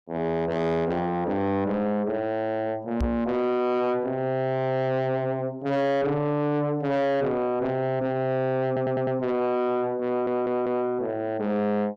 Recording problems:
distortion; soft clipping, signal-to-distortion ratio 8 dB
knock on the microphone; at 3 s; peak +3 dB vs average level
audio stuttering; at 8.5 s and at 10 s

